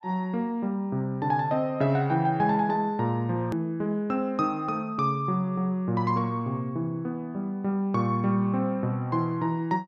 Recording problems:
hard cut with a click; at 3.5 s

